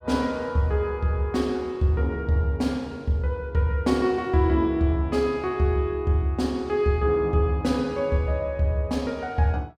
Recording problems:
none

